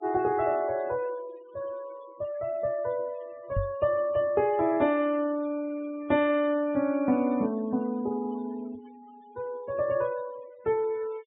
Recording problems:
low-pass filter; nothing above 4 kHz
denoising artefacts; signal-to-artefact ratio 23 dB
knock on the microphone; at 3.5 s; peak +1 dB vs average level

